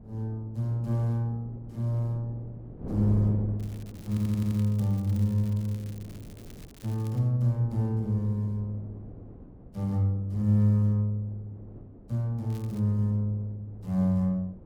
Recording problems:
wind noise; below 320 Hz, SNR 17 dB
crackling; from 3.5 to 7 s and at 13 s; loose cable, SNR 25 dB
audio stuttering; at 4 s

